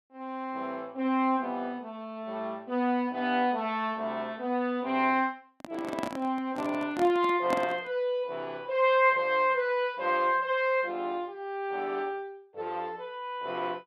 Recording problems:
handling noise; from 5.5 to 8 s; peak +1 dB vs average level

